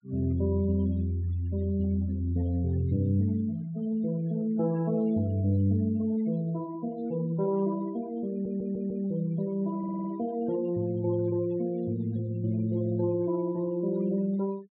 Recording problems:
treble cut off; nothing above 4 kHz
denoising artefacts; signal-to-artefact ratio 22 dB
audio stuttering; at 8.5 s and at 10 s

